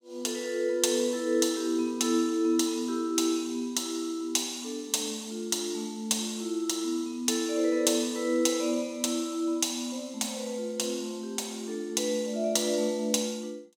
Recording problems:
none

